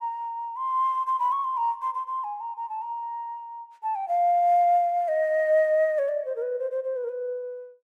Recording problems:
none

